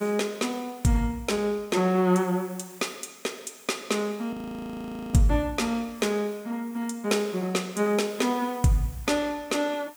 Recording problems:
hiss; SNR 23 dB
frozen audio; at 4.5 s for 1 s

